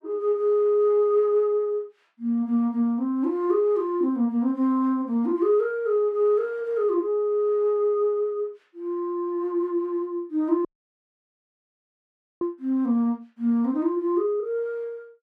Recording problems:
audio cutting out; at 11 s for 2 s

